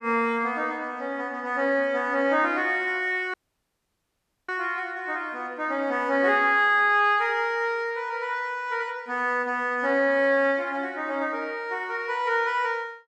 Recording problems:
dropout; at 3.5 s for 1 s

